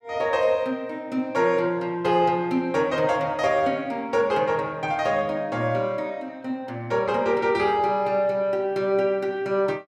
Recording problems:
none

